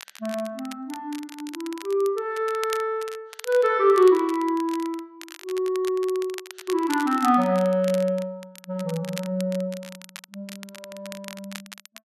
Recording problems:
crackling; vinyl, SNR 17 dB

